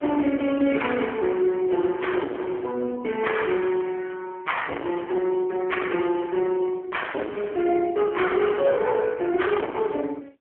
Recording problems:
telephone audio; 220 Hz to 3.3 kHz, AMR-NB
distorted audio; hard clipping, signal-to-distortion ratio 7 dB

